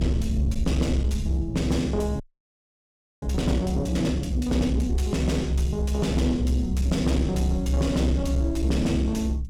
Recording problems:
distortion; soft clipping, signal-to-distortion ratio 10 dB
low-frequency rumble; below 70 Hz, strongest tone 66 Hz, SNR 1 dB
audio freezing; at 2 s for 1 s

